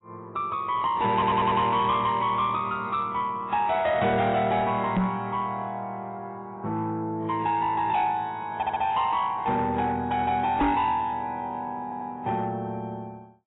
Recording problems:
lossy codec; AAC, log-spectral distance 2 dB, nothing above 3.8 kHz
distorted audio; soft clipping, signal-to-distortion ratio 12 dB
stutter; at 1 s, at 8.5 s and at 12 s
microphone thump; at 5 s and at 11 s; peak +6 dB vs average level

